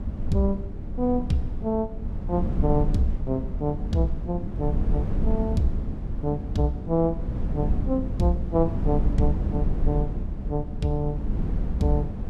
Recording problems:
wind on the microphone; below 120 Hz, SNR 2 dB

